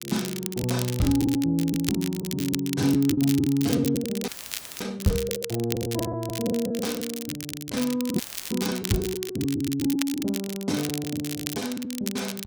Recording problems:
crackling; vinyl, SNR 8 dB
lost packets; 8% of the sound replaced, filled with the last packet
audio cutting out; at 4.5 s for 0.5 s and at 8 s; filled with static

